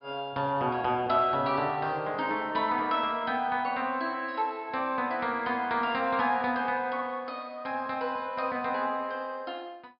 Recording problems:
treble cut off; nothing above 5.5 kHz

